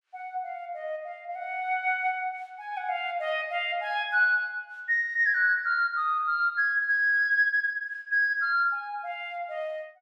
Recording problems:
none

